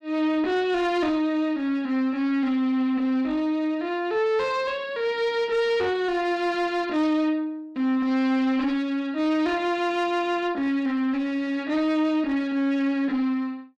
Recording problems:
distorted audio; soft clipping, signal-to-distortion ratio 10 dB

